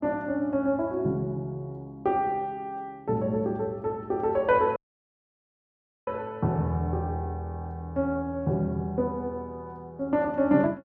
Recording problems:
audio cutting out; at 5 s for 1.5 s

